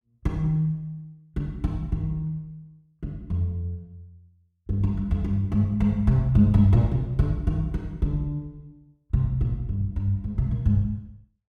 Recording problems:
none

